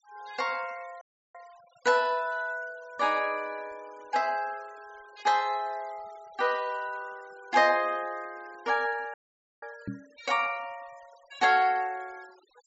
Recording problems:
low-pass filter; nothing above 8 kHz
denoising artefacts; signal-to-artefact ratio 25 dB
dropout; at 1 s and at 9 s
knock on the microphone; at 10 s; peak -3 dB vs average level

